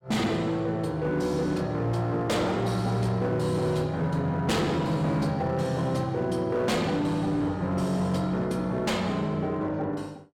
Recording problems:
distortion; hard clipping, signal-to-distortion ratio 11 dB

